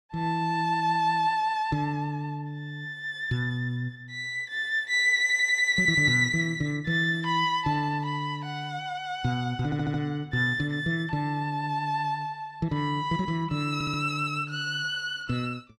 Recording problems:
audio stuttering; at 5 s, at 9.5 s and at 14 s

